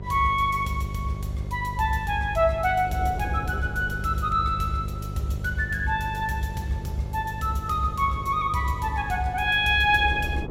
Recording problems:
mains hum; 50 Hz, harmonics up to 600 Hz, SNR 10 dB
wind noise; below 430 Hz, SNR 17 dB

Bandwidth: 16.5 kHz